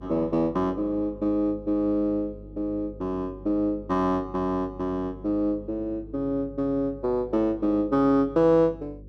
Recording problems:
electrical hum; 50 Hz, harmonics up to 550 Hz, SNR 19 dB

